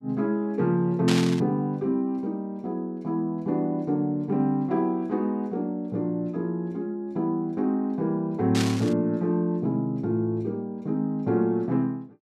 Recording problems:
static burst; at 1 s and at 8.5 s; peak +1 dB vs average level

